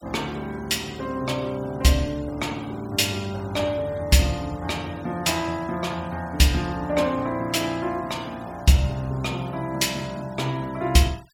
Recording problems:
noise reduction artefacts; signal-to-artefact ratio 24 dB

